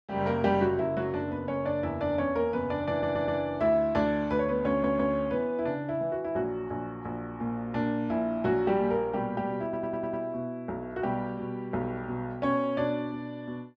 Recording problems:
audio stuttering; at 3 s, at 4.5 s and at 9.5 s

